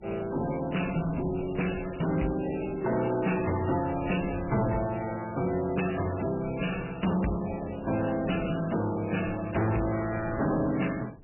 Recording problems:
codec artefacts; MP3, log-spectral distance 9 dB, nothing above 2.9 kHz
distorted audio; soft clipping, signal-to-distortion ratio 12 dB
wind noise; below 300 Hz, SNR 16 dB

